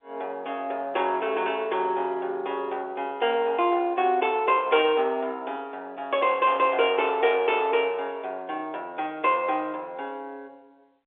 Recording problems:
telephone audio; 300 Hz to 3.6 kHz, G.711

